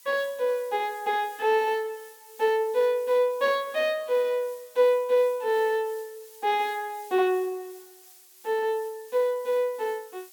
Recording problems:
hiss; slope +3 dB per octave, SNR 23 dB

